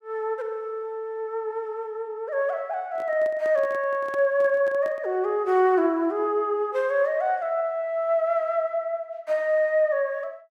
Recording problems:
handling noise; from 3 to 5 s; peak -10 dB vs average level

